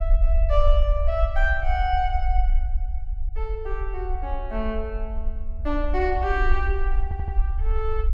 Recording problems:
rumble; below 54 Hz, SNR -1 dB
stutter; at 7 s

